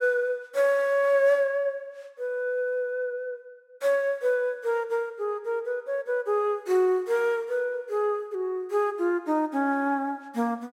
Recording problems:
none

